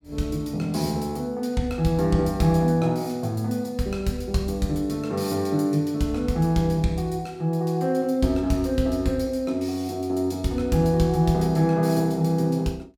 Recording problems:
none

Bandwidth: 17.5 kHz